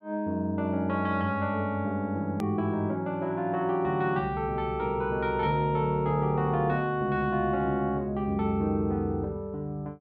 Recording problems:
edit click; at 2.5 s

